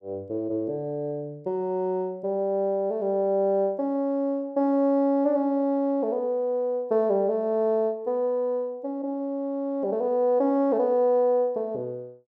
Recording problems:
none

